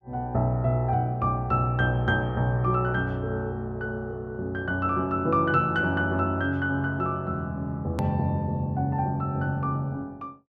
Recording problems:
hard cut with a click; at 8 s

